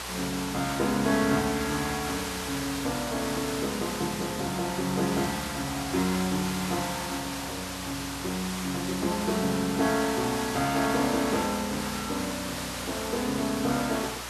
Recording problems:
mains hum; 60 Hz, harmonics up to 540 Hz, SNR 17 dB
hiss; SNR 5 dB

